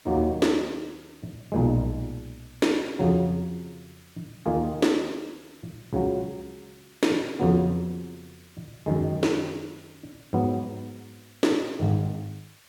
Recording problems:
hiss; slope 0 dB per octave, SNR 27 dB

